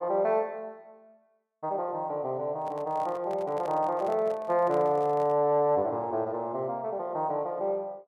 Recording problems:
microphone handling noise; from 2.5 to 5.5 s; peak -10 dB vs average level

